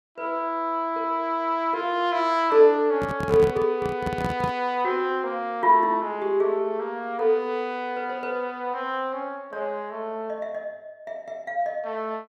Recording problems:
handling noise; from 3 to 4.5 s; peak +1 dB vs average level

